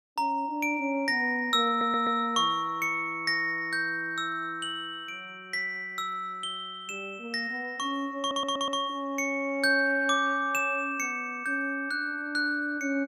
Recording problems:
stutter; at 1.5 s and at 8 s

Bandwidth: 14.5 kHz